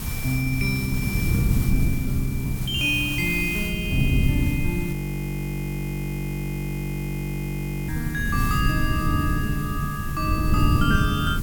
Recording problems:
hiss; SNR 11 dB
wind on the microphone; below 160 Hz, SNR 0 dB
frozen audio; at 5 s for 3 s

